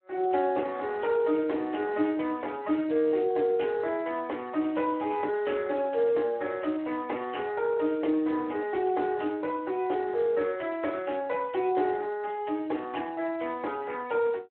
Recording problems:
phone line; 260 Hz to 3.1 kHz, Speex

